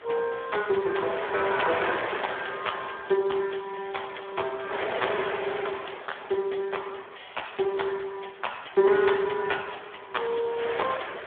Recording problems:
phone line; 320 Hz to 3.5 kHz, Speex
wind noise; below 2.1 kHz, SNR 6 dB

